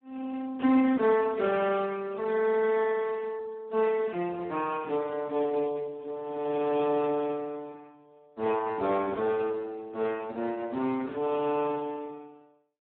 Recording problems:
telephone audio; 220 Hz to 2.6 kHz, Speex

